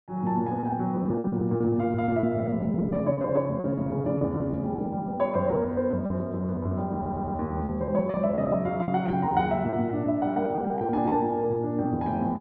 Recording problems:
lost packets; 14% of the sound replaced, filled with repeated pitch periods
stutter; at 7 s

